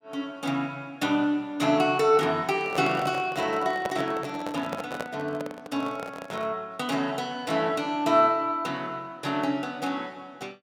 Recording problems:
handling noise; from 2.5 to 6.5 s; peak -1 dB vs average level

